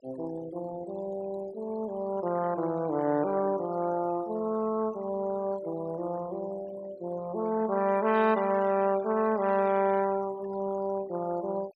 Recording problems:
noise reduction artefacts; signal-to-artefact ratio 19 dB

